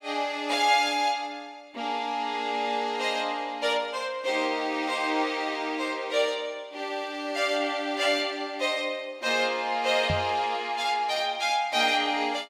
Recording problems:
microphone thump; at 10 s; peak 0 dB vs average level

